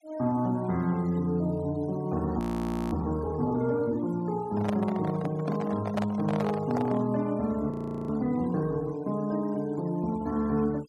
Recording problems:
denoising artefacts; signal-to-artefact ratio 23 dB
audio freezing; at 2.5 s for 0.5 s and at 7.5 s
microphone handling noise; from 4.5 to 7 s; peak +1 dB vs average level

